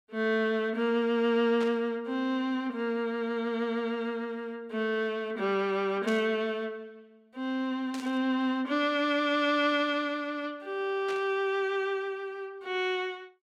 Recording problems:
static burst; 4 times, first at 1.5 s; peak -8 dB vs average level

